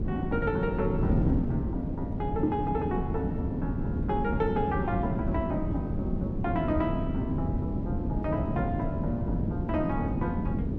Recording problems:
wind noise; below 260 Hz, SNR -2 dB

